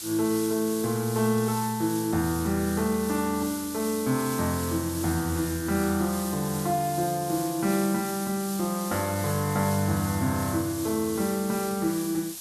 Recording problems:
hiss; SNR 9 dB

